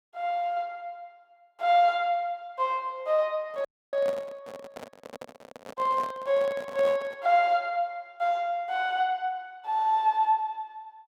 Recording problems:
microphone handling noise; from 3.5 to 7 s; peak -6 dB vs average level
dropout; at 3.5 s

